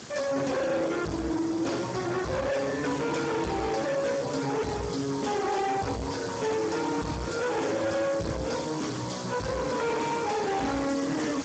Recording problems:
lossy codec; Speex, log-spectral distance 11 dB, nothing above 7.8 kHz
distortion; hard clipping, uneven, signal-to-distortion ratio 6 dB
hiss; SNR 13 dB

